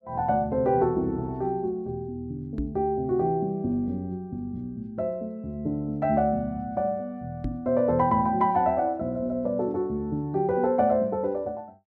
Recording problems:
microphone thump; at 2.5 s and at 7.5 s; peak -1 dB vs average level

